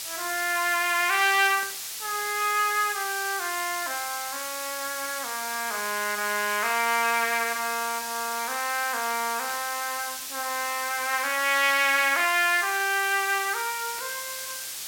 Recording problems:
hiss; slope +3 dB per octave, SNR 7 dB
static burst; 4 times, first at 1.5 s; peak -14 dB vs average level

